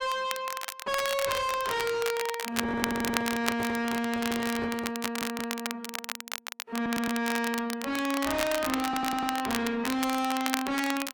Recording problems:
codec artefacts; AAC, log-spectral distance 2 dB, nothing above 14.3 kHz
distortion; soft clipping, signal-to-distortion ratio 5 dB
crackling; vinyl, SNR 6 dB
microphone handling noise; from 2.5 to 5.5 s; peak -1 dB vs average level
stutter; 4 times, first at 2.5 s

